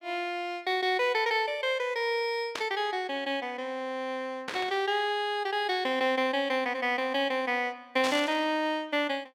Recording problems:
static burst; at 2.5 s, at 4.5 s and at 8 s; peak -2 dB vs average level

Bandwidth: 17 kHz